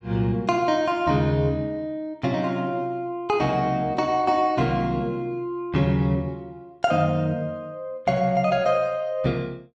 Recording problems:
none

